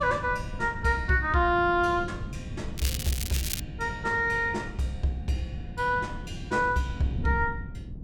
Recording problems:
wind on the microphone; below 180 Hz, SNR 10 dB
crackling; at 3 s; loose cable, SNR 6 dB

